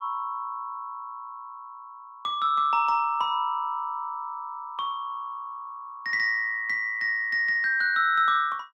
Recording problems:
none

